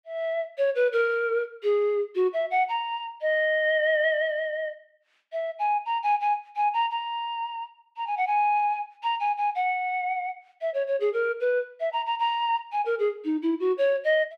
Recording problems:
none

